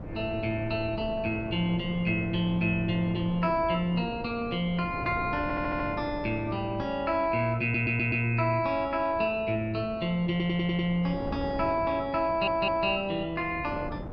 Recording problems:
wind on the microphone; below 460 Hz, SNR 12 dB
stutter; 4 times, first at 5.5 s

